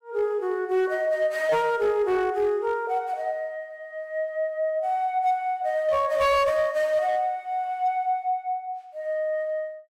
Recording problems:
distortion; hard clipping, signal-to-distortion ratio 11 dB

